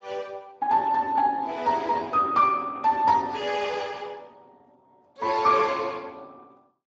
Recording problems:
lossy codec; Speex, log-spectral distance 4 dB

